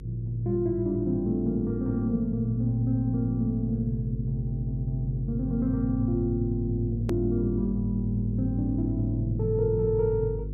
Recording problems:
electrical hum; 50 Hz, harmonics up to 500 Hz, SNR 9 dB
click at an edit; at 7 s

